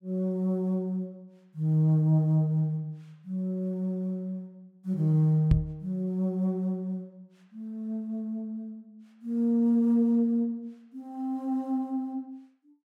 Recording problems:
microphone thump; at 5.5 s; peak +7 dB vs average level

